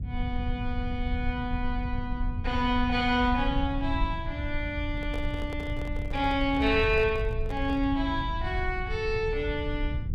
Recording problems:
rumble; below 86 Hz, SNR 5 dB
microphone handling noise; from 5 to 8 s; peak -7 dB vs average level

